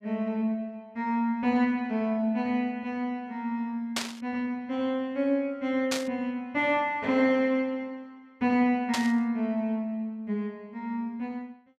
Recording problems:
static burst; at 4 s, at 6 s and at 9 s; peak +4 dB vs average level

